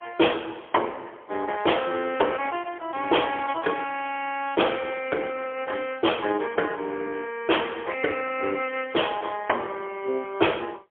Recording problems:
telephone audio; 300 Hz to 3.2 kHz, AMR-NB, then MP3

